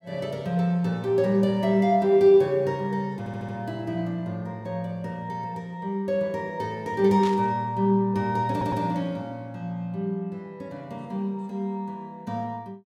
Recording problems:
stutter; at 3 s and at 8.5 s
burst of static; at 7 s; peak -8 dB vs average level

